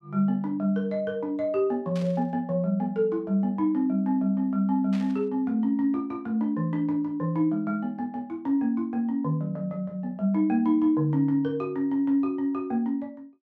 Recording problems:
burst of static; at 2 s and at 5 s; peak -13 dB vs average level

